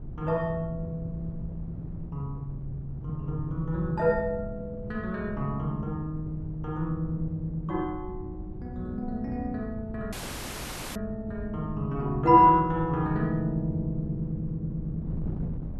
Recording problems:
wind on the microphone; below 160 Hz, SNR 10 dB
audio cutting out; at 10 s for 1 s

